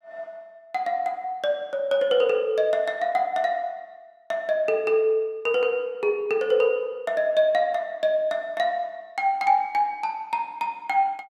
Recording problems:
none

